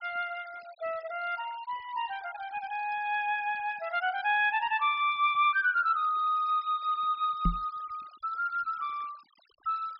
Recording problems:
treble missing; nothing above 5.5 kHz
denoising artefacts; signal-to-artefact ratio 24 dB
microphone thump; at 7.5 s; peak +4 dB vs average level

